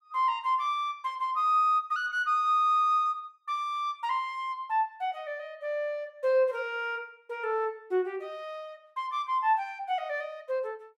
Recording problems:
none

